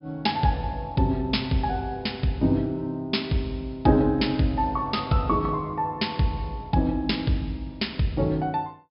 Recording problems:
treble cut off; nothing above 5.3 kHz

